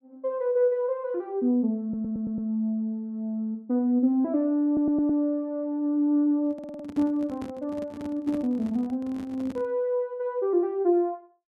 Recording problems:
stutter; at 2 s, at 4.5 s and at 6.5 s
handling noise; from 6.5 to 9.5 s; peak -6 dB vs average level

